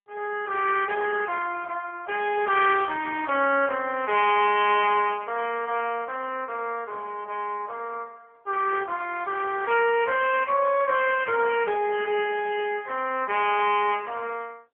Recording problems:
telephone audio; 260 Hz to 3.3 kHz, AMR-NB

